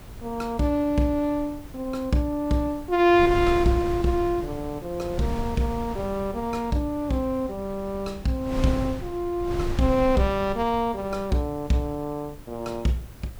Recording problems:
hiss; slope +1 dB per octave, SNR 28 dB
wind on the microphone; below 170 Hz, SNR 11 dB

